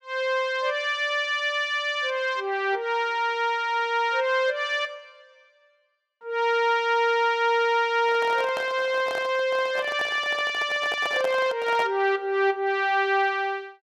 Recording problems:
microphone handling noise; from 8 to 12 s; peak -4 dB vs average level

